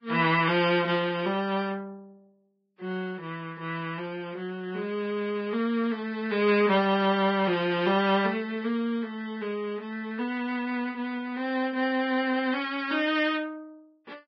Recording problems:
lossy codec; Vorbis, log-spectral distance 2 dB, nothing above 4.8 kHz

